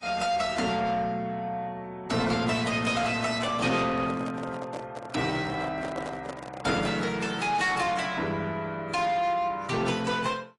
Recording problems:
lossy codec; AAC, then AAC, log-spectral distance 3 dB, nothing above 10.4 kHz
distorted audio; soft clipping, signal-to-distortion ratio 12 dB
handling noise; from 3 to 7 s; peak -2 dB vs average level

